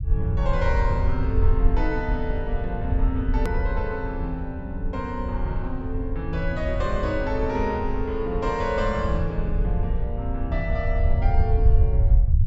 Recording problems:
low-pass filter; nothing above 8 kHz
low-frequency rumble; below 76 Hz, SNR -2 dB
edit click; at 3.5 s

